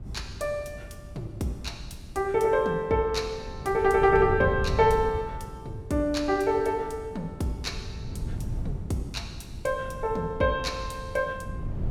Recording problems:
wind on the microphone; below 140 Hz, SNR 11 dB

